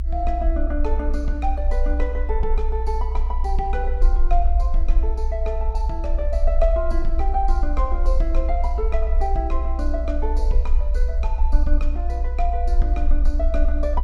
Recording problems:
rumble; below 58 Hz, strongest tone 26 Hz, SNR -5 dB

